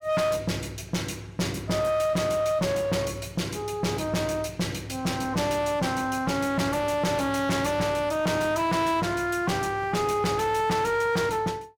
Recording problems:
distortion; hard clipping, uneven, signal-to-distortion ratio 7 dB

